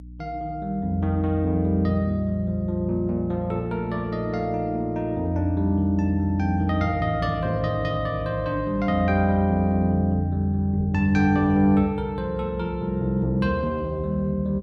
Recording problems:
hum; 60 Hz, harmonics up to 300 Hz, SNR 20 dB

